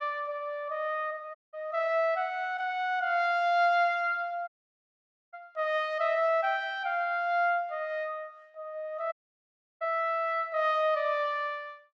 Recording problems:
dropout; at 1.5 s, at 4.5 s for 1 s and at 9 s for 0.5 s

